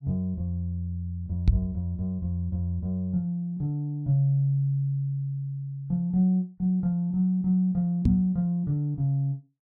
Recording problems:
microphone thump; at 1.5 s and at 8 s; peak +9 dB vs average level

